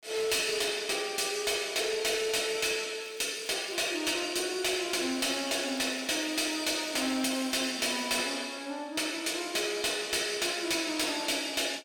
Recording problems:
distorted audio; hard clipping, uneven, signal-to-distortion ratio 11 dB
crackling; at 3 s and from 5 to 8 s; loose cable, SNR 27 dB

